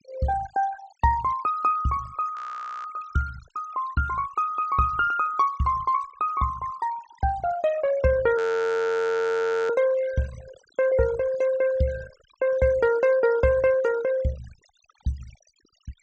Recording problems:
low-pass filter; nothing above 8 kHz
denoising artefacts; signal-to-artefact ratio 16 dB
frozen audio; at 2.5 s and at 8.5 s for 1.5 s

